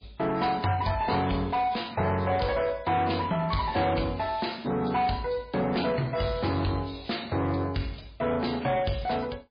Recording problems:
lossy codec; MP3, log-spectral distance 5 dB, nothing above 4.5 kHz
distortion; soft clipping, signal-to-distortion ratio 10 dB

